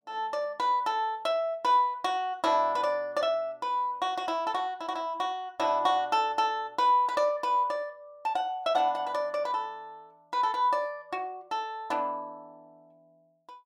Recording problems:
none

